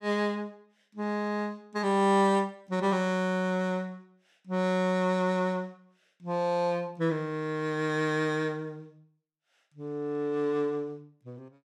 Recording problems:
none

